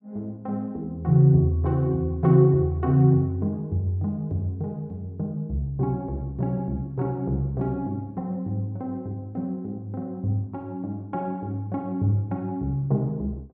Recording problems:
none

